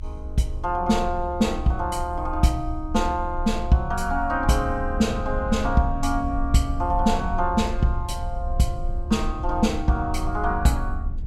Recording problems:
low-frequency rumble; below 68 Hz, strongest tone 24 Hz, SNR 7 dB

